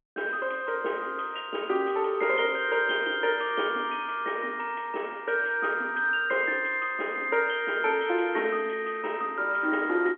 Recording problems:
phone line; 240 Hz to 3.3 kHz, G.711

